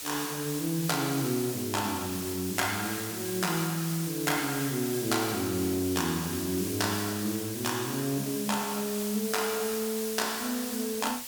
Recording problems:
background hiss; slope +1 dB per octave, SNR 5 dB

